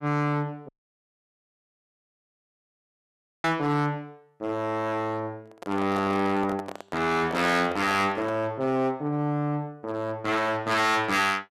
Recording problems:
distortion; hard clipping, signal-to-distortion ratio 7 dB
dropout; at 0.5 s for 3 s
handling noise; from 5.5 to 8.5 s; peak -5 dB vs average level

